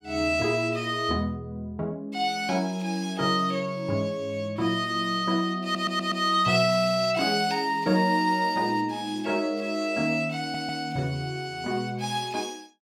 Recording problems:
audio stuttering; at 5.5 s and at 10 s

